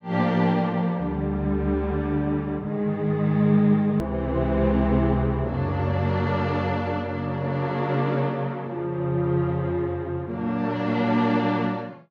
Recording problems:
click at an edit; at 4 s

